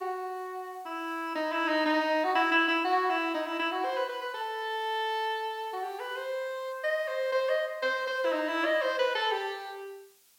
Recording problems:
background hiss; slope +2 dB per octave, SNR 29 dB

